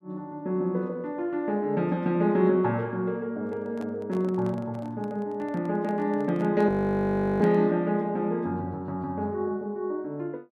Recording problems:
microphone handling noise; from 3.5 to 8 s; peak -9 dB vs average level
audio freezing; at 6.5 s for 0.5 s

